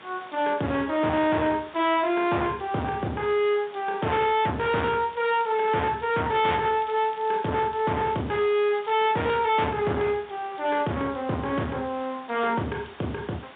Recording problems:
telephone audio; 130 Hz to 3.9 kHz, G.711
distorted audio; hard clipping, signal-to-distortion ratio 7 dB
hiss; SNR 21 dB
crackling; from 5 to 9.5 s; loose cable, SNR 26 dB

